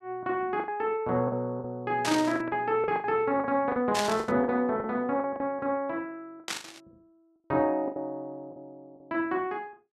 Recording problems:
packet loss; 11% of the sound replaced, filled with the last packet
burst of static; at 2 s, at 4 s and at 6.5 s; peak +2 dB vs average level

